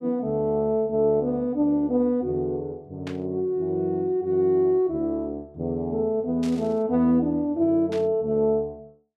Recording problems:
static burst; at 3 s, at 6.5 s and at 8 s; peak -11 dB vs average level

